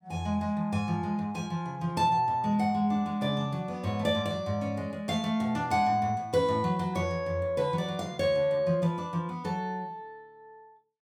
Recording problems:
none

